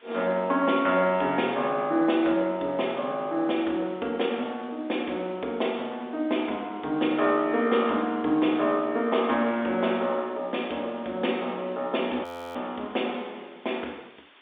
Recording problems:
phone line; 260 Hz to 3.7 kHz, G.711
background hiss; SNR 29 dB
audio freezing; at 12 s

